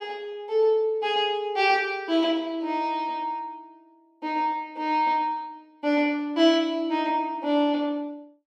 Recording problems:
none

